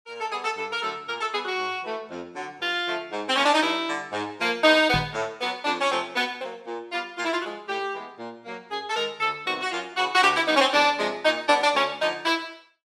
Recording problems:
knock on the microphone; at 5 s; peak -1 dB vs average level

